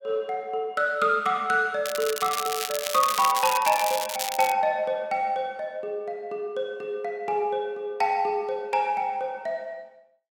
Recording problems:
crackling; from 2 to 4.5 s; loose cable, SNR 5 dB

